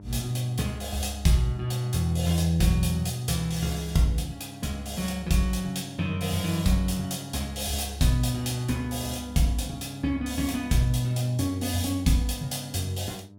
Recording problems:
electrical hum; 50 Hz, harmonics up to 900 Hz, SNR 19 dB

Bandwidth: 17.5 kHz